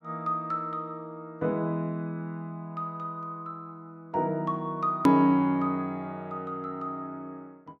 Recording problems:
hard cut with a click; at 5 s

